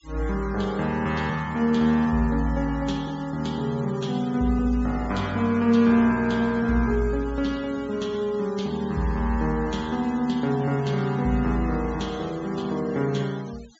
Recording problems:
treble cut off; nothing above 8 kHz
noise reduction artefacts; signal-to-artefact ratio 22 dB

